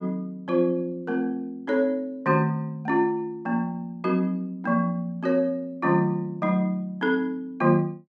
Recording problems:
none

